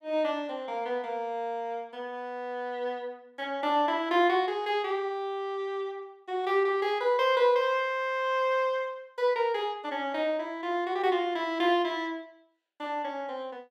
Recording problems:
none

